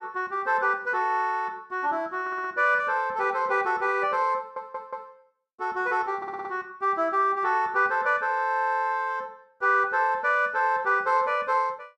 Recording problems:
stutter; at 2 s, at 4.5 s and at 6 s

